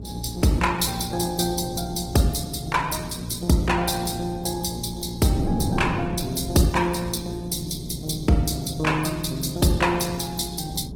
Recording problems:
lossy codec; Opus, log-spectral distance 6 dB, nothing above 16.5 kHz
hum; 60 Hz, harmonics up to 420 Hz, SNR 15 dB
wind on the microphone; below 280 Hz, SNR 11 dB

